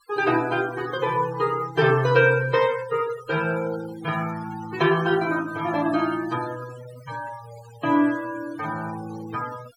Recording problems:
denoising artefacts; signal-to-artefact ratio 17 dB

